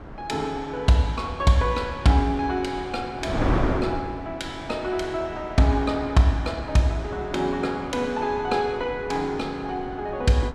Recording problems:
wind noise; below 600 Hz, SNR 10 dB

